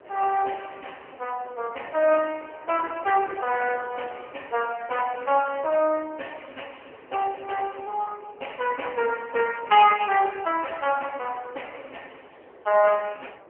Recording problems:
telephone audio; 340 Hz to 3 kHz, AMR-NB
wind on the microphone; below 820 Hz, SNR 22 dB

